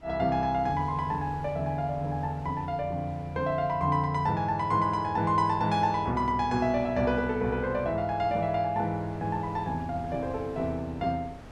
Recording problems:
wind on the microphone; below 730 Hz, SNR 21 dB

